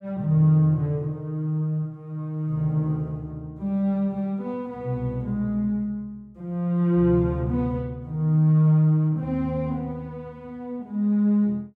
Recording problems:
none

